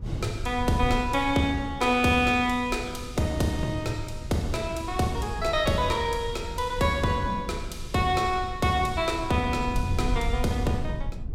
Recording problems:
wind noise; below 96 Hz, SNR 10 dB

